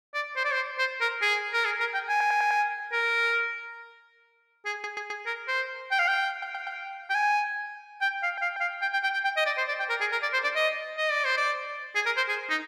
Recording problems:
audio stuttering; 4 times, first at 2 s

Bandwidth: 15 kHz